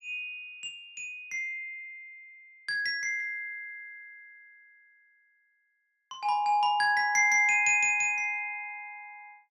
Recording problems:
none

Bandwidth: 13 kHz